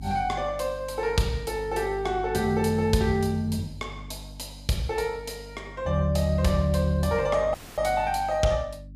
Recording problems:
hum; 50 Hz, harmonics up to 300 Hz, SNR 16 dB
audio cutting out; at 7.5 s

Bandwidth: 15 kHz